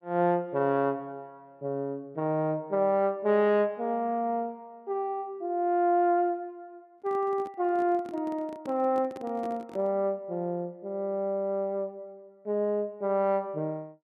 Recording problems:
microphone handling noise; from 7 to 10 s; peak -10 dB vs average level

